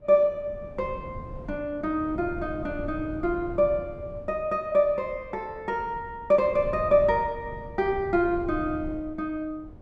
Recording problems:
wind noise; below 200 Hz, SNR 15 dB

